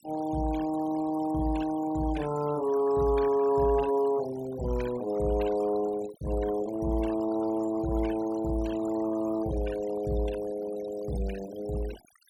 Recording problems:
denoising artefacts; signal-to-artefact ratio 15 dB

